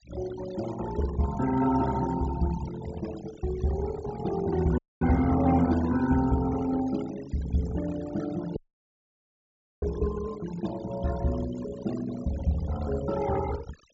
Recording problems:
treble cut off; nothing above 8 kHz
denoising artefacts; signal-to-artefact ratio 14 dB
audio cutting out; at 5 s and at 8.5 s for 1.5 s

